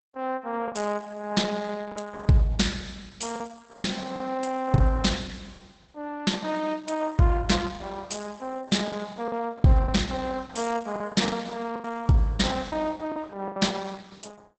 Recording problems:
lossy codec; Opus, log-spectral distance 5 dB, nothing above 8 kHz
packet loss; 6% of the sound replaced, filled with the last packet

